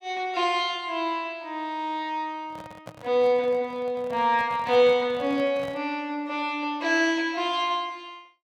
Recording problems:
microphone handling noise; from 2.5 to 6 s; peak -11 dB vs average level

